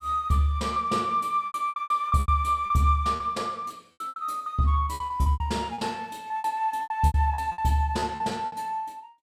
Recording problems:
lost packets; 15% of the sound replaced, filled with repeated pitch periods

